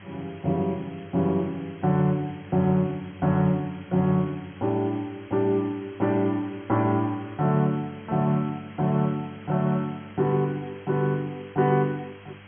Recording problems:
low-pass filter; nothing above 3.3 kHz
hum; 50 Hz, harmonics up to 1 kHz, SNR 23 dB
background hiss; SNR 23 dB

